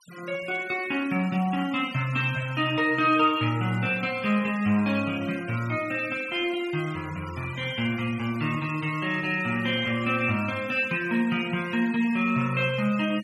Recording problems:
denoising artefacts; signal-to-artefact ratio 19 dB

